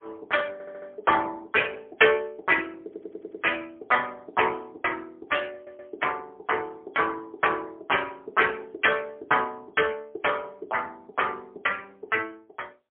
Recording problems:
phone line; 280 Hz to 3.4 kHz, AMR-NB, then MP3
audio stuttering; at 0.5 s, at 3 s and at 5.5 s

